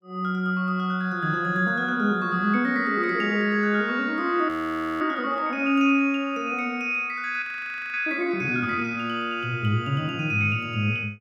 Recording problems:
frozen audio; at 4.5 s for 0.5 s and at 7.5 s for 0.5 s

